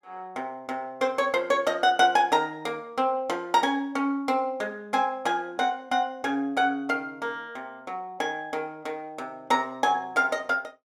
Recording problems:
none

